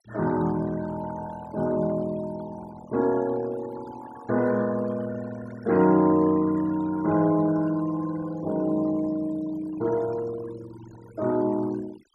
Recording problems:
denoising artefacts; signal-to-artefact ratio 19 dB

